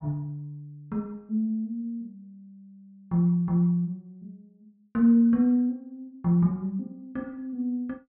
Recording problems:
low-pass filter; nothing above 5.5 kHz

